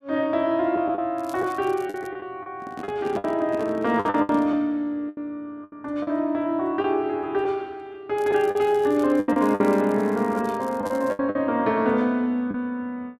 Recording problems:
packet loss; 8% of the sound replaced, filled with the last packet
crackle; at 1 s and from 8 to 11 s; loose cable, SNR 26 dB
microphone handling noise; from 2.5 to 4.5 s; peak -4 dB vs average level

